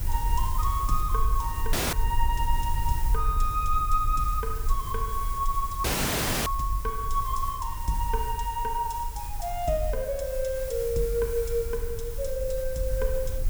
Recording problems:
background hiss; slope -1 dB per octave, SNR 11 dB
rumble; below 52 Hz, strongest tone 20 Hz, SNR 4 dB
dropout; at 1.5 s and at 6 s for 0.5 s
crackling; from 8.5 to 12 s; loose cable, SNR 29 dB

